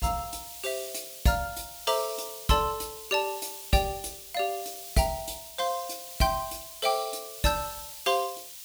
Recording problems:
hiss; SNR 10 dB

